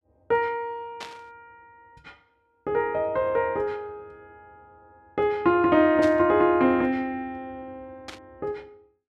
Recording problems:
static burst; at 1 s, at 6 s and at 8 s; peak -9 dB vs average level

